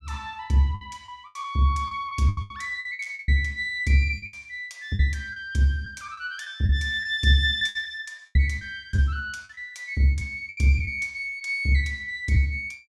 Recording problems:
packet loss; 10% of the sound replaced, filled with the last packet

